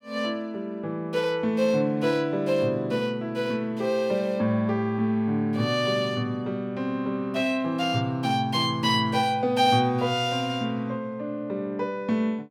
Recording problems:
none

